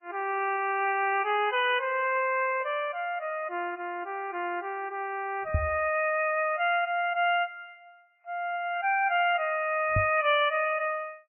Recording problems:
lossy codec; MP3, log-spectral distance 3 dB, nothing above 2.5 kHz
knock on the microphone; at 5.5 s and at 10 s; peak +3 dB vs average level

